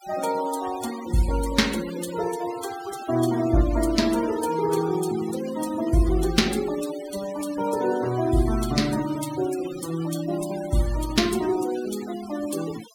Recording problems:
noise reduction artefacts; signal-to-artefact ratio 14 dB

